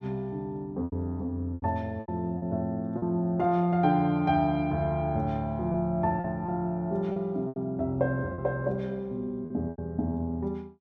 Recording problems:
packet loss; 7% of the sound replaced, filled with repeated pitch periods

